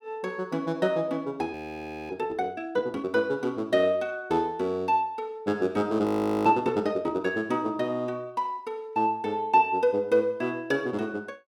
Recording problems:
audio freezing; at 1.5 s for 0.5 s and at 6 s

